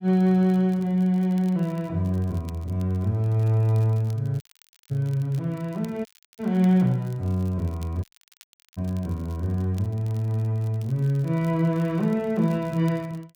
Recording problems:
crackling; vinyl, SNR 29 dB
audio cutting out; at 4.5 s, at 6 s and at 8 s for 0.5 s

